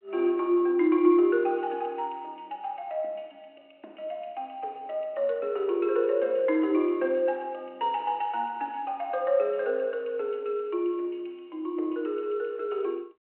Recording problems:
telephone audio; 280 Hz to 3.5 kHz, G.726

